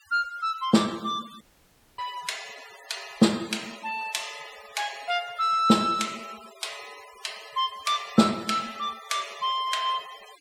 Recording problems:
denoising artefacts; signal-to-artefact ratio 18 dB
dropout; at 1.5 s for 0.5 s

